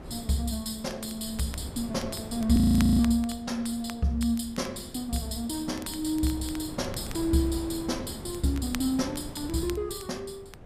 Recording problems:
wind on the microphone; below 370 Hz, SNR 14 dB
crackling; vinyl, SNR 18 dB
audio freezing; at 2.5 s

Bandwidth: 14.5 kHz